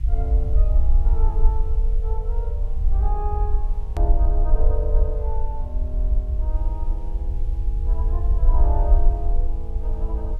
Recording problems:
background hiss; SNR 26 dB
rumble; below 54 Hz, SNR -12 dB
hard cut with a click; at 4 s

